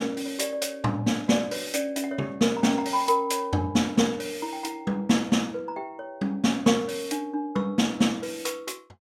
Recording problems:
none

